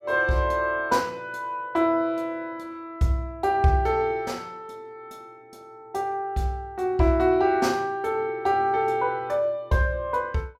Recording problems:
none

